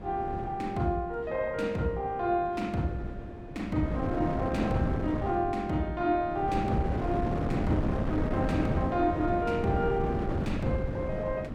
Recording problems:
wind on the microphone; below 390 Hz, SNR 3 dB

